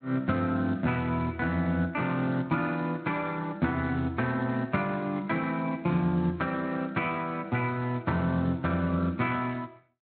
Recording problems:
lossy compression; Speex, log-spectral distance 3 dB, nothing above 4.1 kHz

